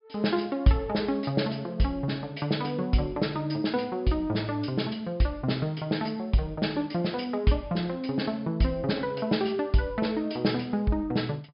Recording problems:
low-pass filter; nothing above 5.5 kHz

